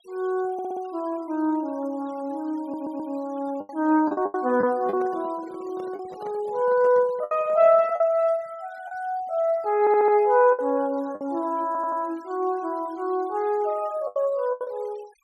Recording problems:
denoising artefacts; signal-to-artefact ratio 28 dB
packet loss; 5% of the sound replaced, filled with the last packet
stutter; 4 times, first at 0.5 s
handling noise; from 4.5 to 8 s; peak -11 dB vs average level

